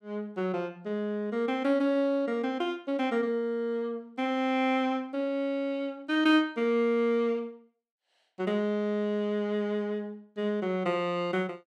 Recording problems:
none

